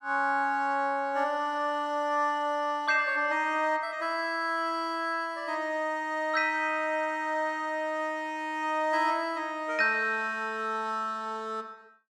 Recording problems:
none

